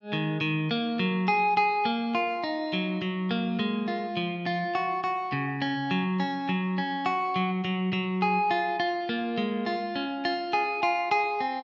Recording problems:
none

